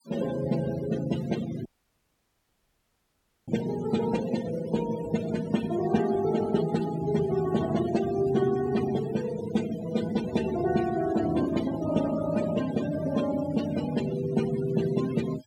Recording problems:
denoising artefacts; signal-to-artefact ratio 12 dB
dropout; at 1.5 s for 2 s

